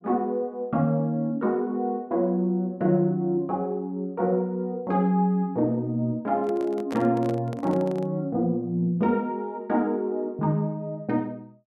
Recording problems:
handling noise; from 6.5 to 8 s; peak -5 dB vs average level

